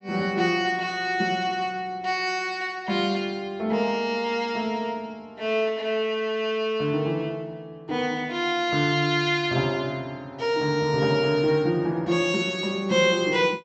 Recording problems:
treble missing; nothing above 7.8 kHz

